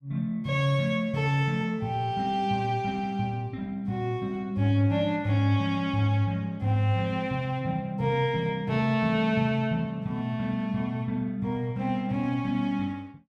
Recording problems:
none

